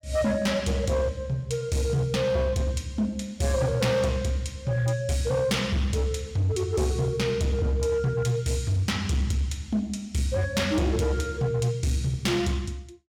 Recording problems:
distorted audio; hard clipping, uneven, signal-to-distortion ratio 12 dB

